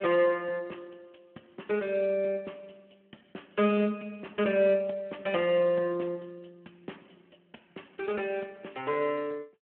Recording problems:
phone line; 170 Hz to 3.2 kHz, Speex

